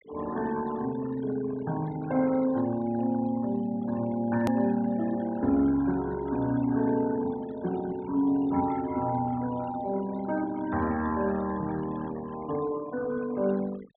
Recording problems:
low-pass filter; nothing above 4 kHz
denoising artefacts; signal-to-artefact ratio 18 dB
edit click; at 4.5 s

